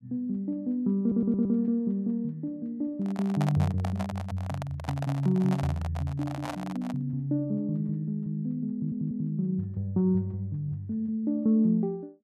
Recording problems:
stutter; at 1 s and at 8.5 s
microphone handling noise; from 3 to 7 s; peak -1 dB vs average level

